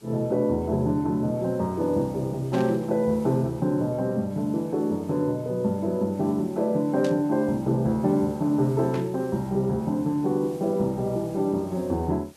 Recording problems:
background hiss; slope -2 dB per octave, SNR 27 dB
static burst; at 2.5 s, at 7 s and at 9 s; peak -10 dB vs average level

